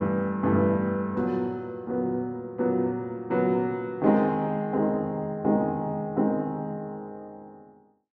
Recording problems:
none

